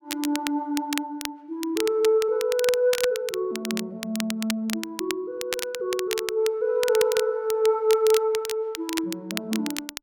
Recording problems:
crackle; vinyl, SNR 8 dB

